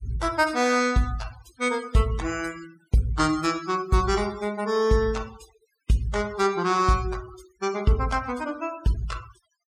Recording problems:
noise reduction artefacts; signal-to-artefact ratio 19 dB

